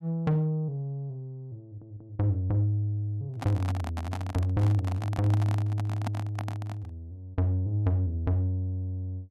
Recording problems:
stutter; at 1.5 s
microphone handling noise; from 3.5 to 7 s; peak -2 dB vs average level

